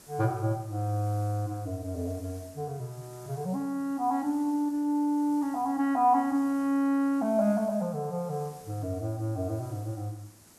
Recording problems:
hiss; SNR 23 dB

